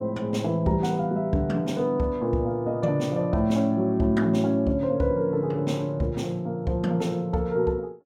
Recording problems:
none

